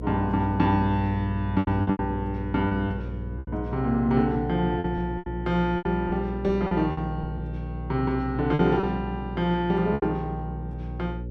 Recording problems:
hum; 60 Hz, harmonics up to 540 Hz, SNR 8 dB
packet loss; 8% of the sound replaced, filled with repeated pitch periods

